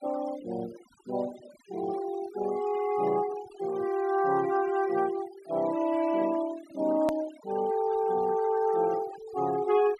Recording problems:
denoising artefacts; signal-to-artefact ratio 18 dB
edit click; at 7 s

